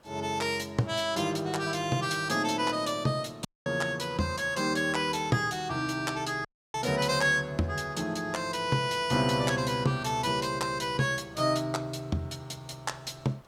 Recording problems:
background hiss; SNR 29 dB
audio cutting out; at 3.5 s and at 6.5 s

